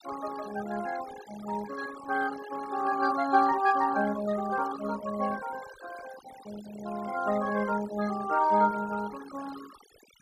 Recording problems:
noise reduction artefacts; signal-to-artefact ratio 16 dB

